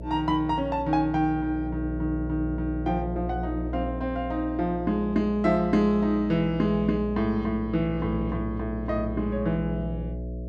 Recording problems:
electrical hum; 60 Hz, harmonics up to 660 Hz, SNR 8 dB

